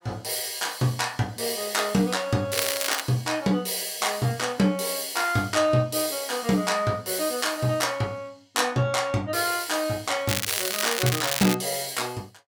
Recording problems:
crackle; at 2.5 s and from 10 to 12 s; loose cable, SNR 2 dB

